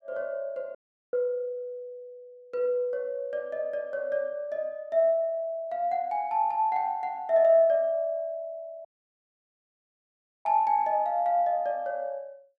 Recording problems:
dropout; at 1 s and at 9 s for 1.5 s

